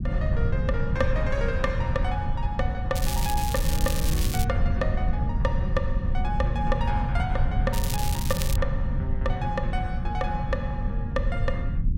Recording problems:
rumble; below 100 Hz, SNR -3 dB
crackling; from 3 to 4.5 s and at 7.5 s; loose cable, SNR 2 dB

